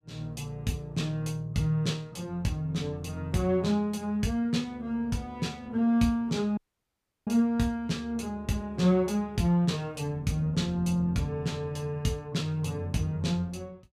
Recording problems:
audio cutting out; at 6.5 s for 0.5 s

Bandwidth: 15 kHz